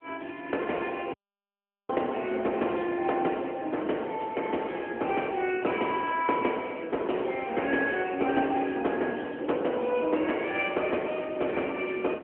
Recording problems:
telephone audio; 240 Hz to 3.1 kHz, AMR-NB
audio cutting out; at 1 s for 1 s

